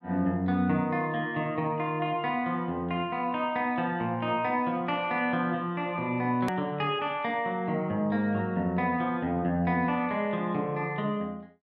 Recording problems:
hard cut with a click; at 6.5 s

